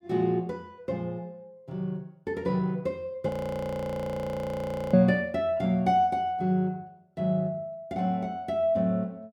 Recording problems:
frozen audio; at 3.5 s for 1.5 s

